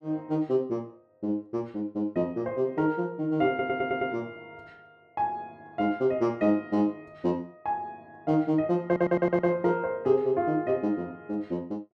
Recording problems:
audio stuttering; at 3.5 s and at 9 s

